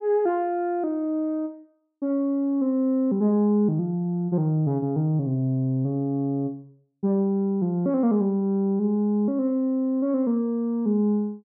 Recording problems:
none

